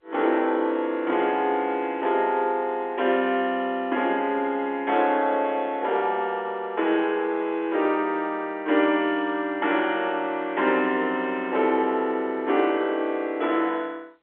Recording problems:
phone line; 280 Hz to 3.6 kHz, G.711

